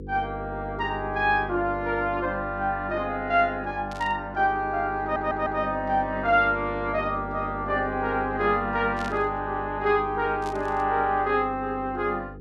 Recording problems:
hum; 50 Hz, harmonics up to 500 Hz, SNR 13 dB
static burst; at 4 s, at 9 s and at 10 s; peak -10 dB vs average level
stutter; at 5 s

